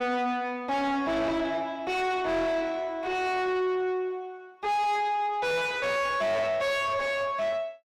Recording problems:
distortion; soft clipping, signal-to-distortion ratio 6 dB

